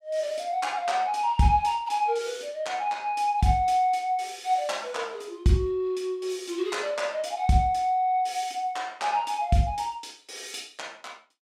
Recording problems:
none

